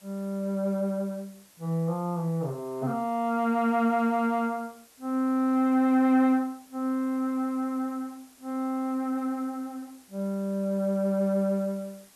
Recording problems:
hiss; slope -1 dB per octave, SNR 27 dB

